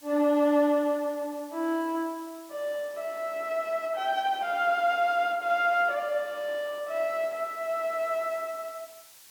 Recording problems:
hiss; slope +2 dB per octave, SNR 24 dB

